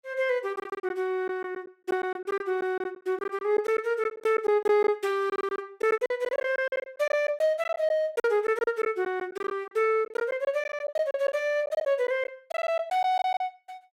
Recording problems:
lost packets; 13% of the sound replaced, filled with silence

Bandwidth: 16 kHz